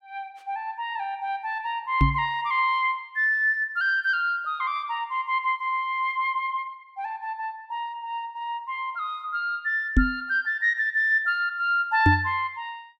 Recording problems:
microphone bump; at 2 s, at 10 s and at 12 s; peak +8 dB vs average level

